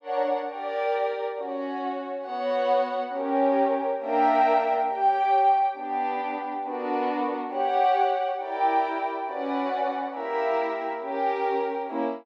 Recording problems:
none

